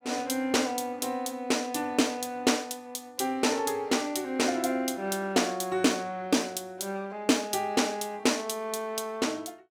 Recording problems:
none

